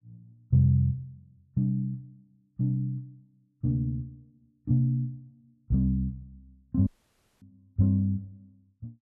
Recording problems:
dropout; at 7 s for 0.5 s

